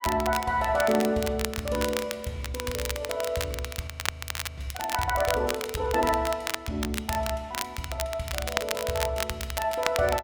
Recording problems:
crackling; vinyl, SNR 5 dB
frozen audio; at 4 s for 0.5 s

